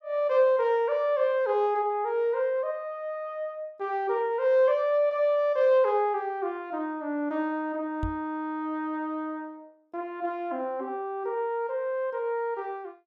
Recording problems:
microphone thump; at 8 s; peak -2 dB vs average level

